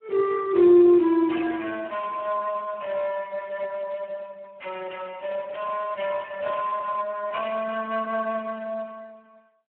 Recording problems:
phone line; 260 Hz to 3 kHz, Speex

